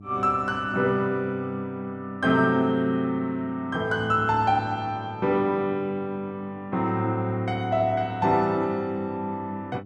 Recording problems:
hum; 50 Hz, harmonics up to 700 Hz, SNR 19 dB

